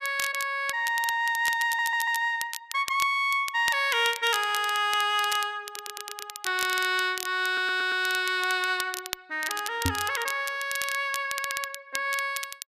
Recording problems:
crackling; vinyl, SNR 10 dB
stutter; 4 times, first at 1.5 s
microphone thump; at 10 s; peak +2 dB vs average level

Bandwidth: 14.5 kHz